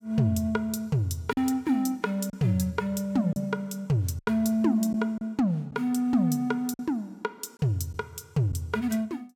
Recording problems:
packet loss; 3% of the sound replaced, filled with silence

